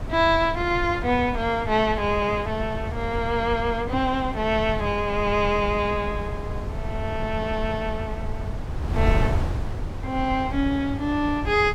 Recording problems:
wind on the microphone; below 150 Hz, SNR 7 dB

